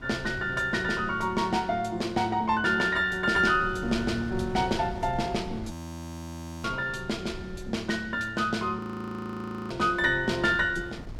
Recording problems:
wind on the microphone; below 240 Hz, SNR 15 dB
frozen audio; at 5.5 s for 1 s and at 9 s for 1 s

